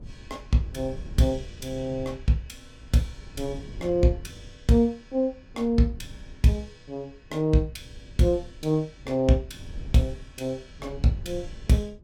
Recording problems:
wind noise; below 110 Hz, SNR 17 dB

